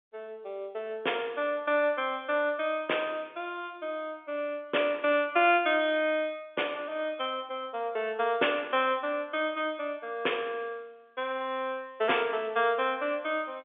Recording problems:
telephone audio; 320 Hz to 3.5 kHz, G.711

